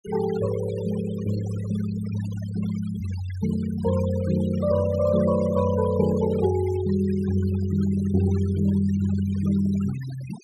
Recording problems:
denoising artefacts; signal-to-artefact ratio 17 dB

